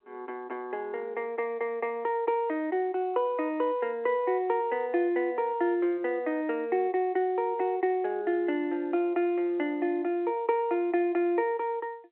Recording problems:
telephone audio; 280 Hz to 3.3 kHz, G.711

